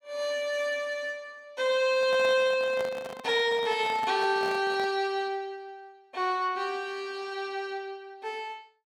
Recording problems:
handling noise; from 2 to 5 s; peak -6 dB vs average level

